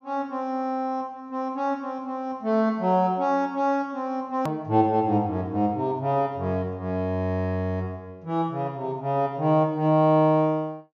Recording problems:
treble missing; nothing above 6.8 kHz
hard cut with a click; at 4.5 s

